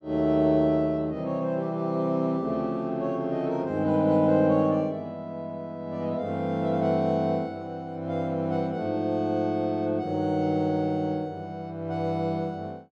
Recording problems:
none

